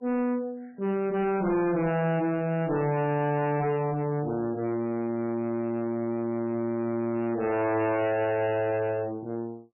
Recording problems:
codec artefacts; MP3, log-spectral distance 2 dB, nothing above 2.8 kHz
distorted audio; soft clipping, signal-to-distortion ratio 5 dB

